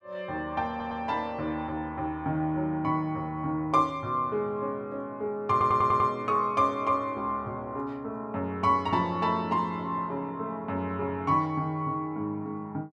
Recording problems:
stutter; at 0.5 s and at 5.5 s

